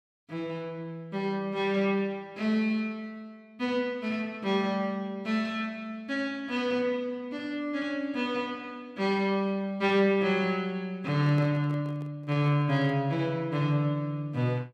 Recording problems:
microphone handling noise; from 11 to 13 s; peak -9 dB vs average level

